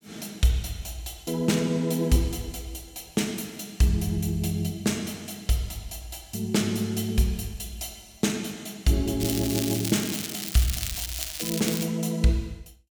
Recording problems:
crackling; from 9 to 12 s; loose cable, SNR 4 dB

